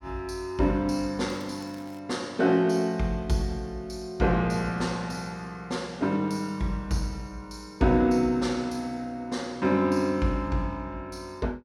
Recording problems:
crackle; at 1.5 s; loose cable, SNR 28 dB

